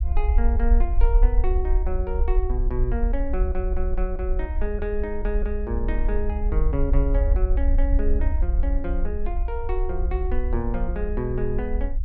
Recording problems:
rumble; below 54 Hz, SNR -5 dB

